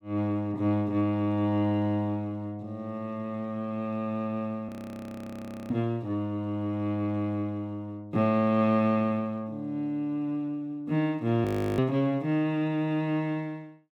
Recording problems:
audio freezing; at 4.5 s for 1 s and at 11 s

